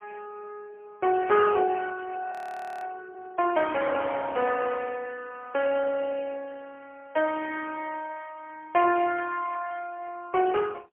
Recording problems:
telephone audio; 340 Hz to 2.5 kHz, AMR-NB, then MP3
audio freezing; at 2.5 s for 0.5 s

